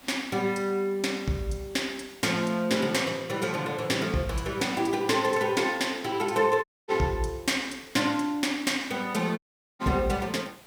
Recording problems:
hiss; slope -3 dB per octave, SNR 24 dB
dropout; at 6.5 s and at 9.5 s

